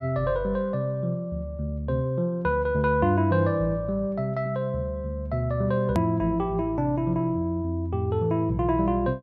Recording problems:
hard cut with a click; at 6 s

